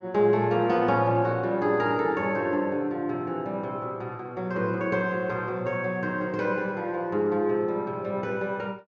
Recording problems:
treble missing; nothing above 8 kHz

